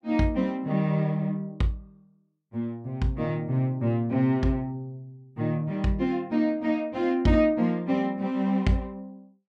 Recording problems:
none

